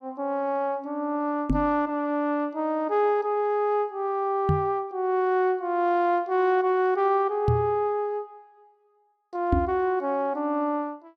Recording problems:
knock on the microphone; 4 times, first at 1.5 s; peak +5 dB vs average level

